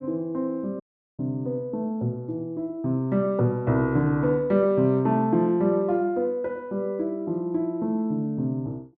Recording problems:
dropout; at 1 s

